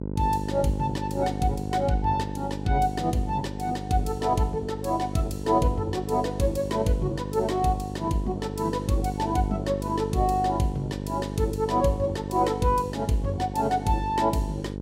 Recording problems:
hum; 50 Hz, harmonics up to 1 kHz, SNR 7 dB

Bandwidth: 16 kHz